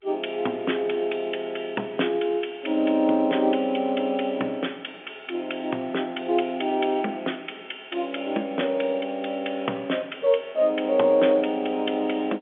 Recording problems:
telephone audio; 220 Hz to 3.5 kHz, G.711

